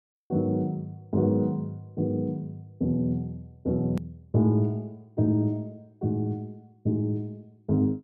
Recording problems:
edit click; at 4 s

